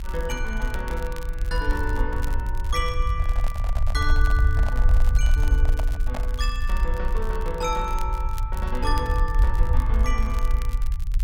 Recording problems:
low-frequency rumble; below 58 Hz, SNR -5 dB
crackling; vinyl, SNR 16 dB
microphone handling noise; from 3 to 6.5 s; peak +1 dB vs average level

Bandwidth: 16.5 kHz